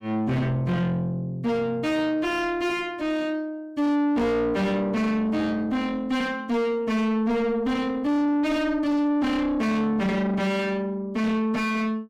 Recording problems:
distortion; soft clipping, signal-to-distortion ratio 6 dB

